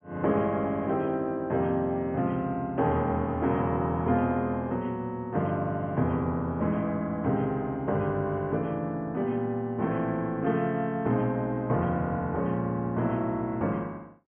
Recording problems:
treble missing; nothing above 3.2 kHz

